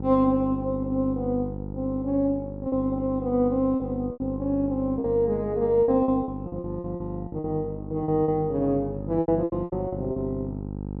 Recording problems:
electrical hum; 50 Hz, harmonics up to 950 Hz, SNR 9 dB
packet loss; 9% of the sound replaced, filled with repeated pitch periods

